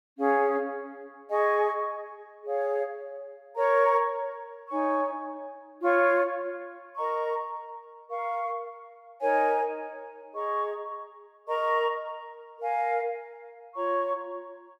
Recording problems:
none

